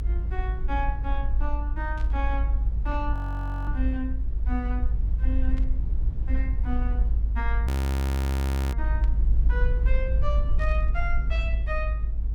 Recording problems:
low-frequency rumble; below 58 Hz, SNR -8 dB
burst of static; 4 times, first at 2 s; peak -9 dB vs average level
audio freezing; at 3 s for 0.5 s and at 7.5 s for 1 s

